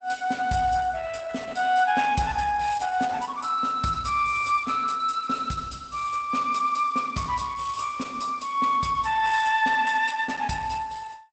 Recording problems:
codec artefacts; Opus, log-spectral distance 4 dB, nothing above 8 kHz

